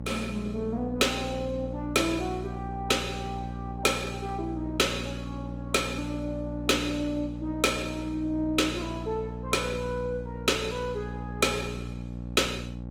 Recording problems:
lossy codec; Opus, log-spectral distance 3 dB, nothing above 20.1 kHz
hum; 60 Hz, harmonics up to 840 Hz, SNR 8 dB

